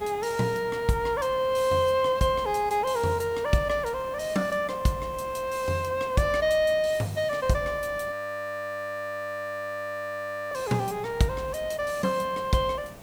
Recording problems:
hiss; SNR 19 dB
audio freezing; at 8 s for 2.5 s

